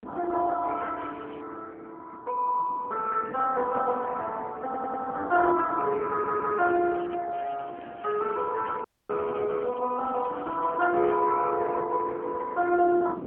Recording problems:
phone line; 280 Hz to 2.5 kHz, AMR-NB
wind on the microphone; below 440 Hz, SNR 17 dB
crackling; 4 times, first at 1 s; loose cable, SNR 27 dB
audio stuttering; at 4.5 s and at 6 s
audio cutting out; at 9 s

